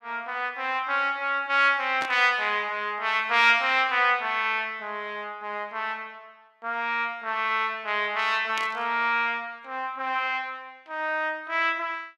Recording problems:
burst of static; at 2 s and at 8.5 s; peak -5 dB vs average level

